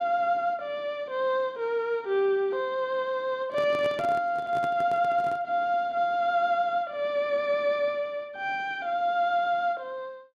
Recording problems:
handling noise; from 3.5 to 5.5 s; peak -6 dB vs average level

